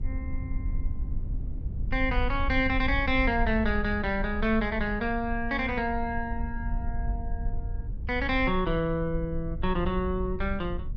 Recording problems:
low-frequency rumble; below 66 Hz, SNR 6 dB

